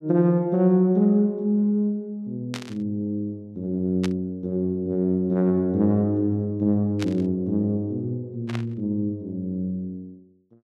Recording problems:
static burst; 4 times, first at 2.5 s; peak -5 dB vs average level

